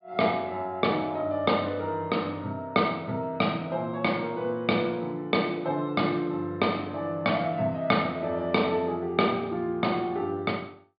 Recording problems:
treble missing; nothing above 4.8 kHz

